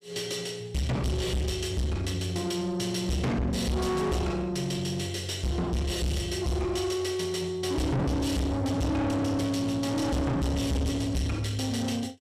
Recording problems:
distortion; soft clipping, signal-to-distortion ratio 6 dB

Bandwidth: 15 kHz